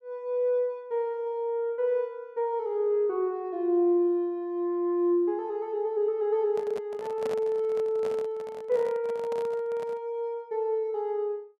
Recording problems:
handling noise; from 6.5 to 10 s; peak -5 dB vs average level

